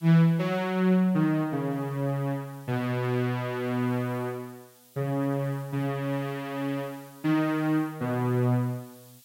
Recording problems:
background hiss; SNR 27 dB

